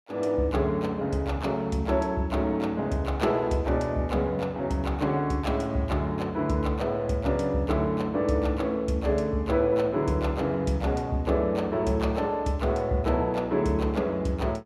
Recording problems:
none

